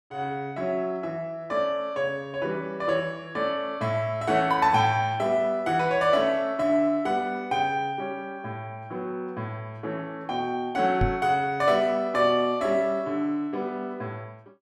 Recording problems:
microphone thump; at 11 s; peak +3 dB vs average level

